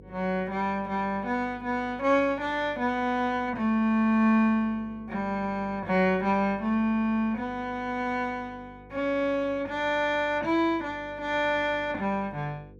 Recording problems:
hum; 50 Hz, harmonics up to 500 Hz, SNR 23 dB

